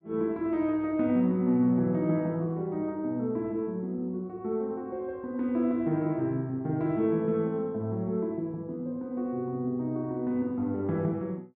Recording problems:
none

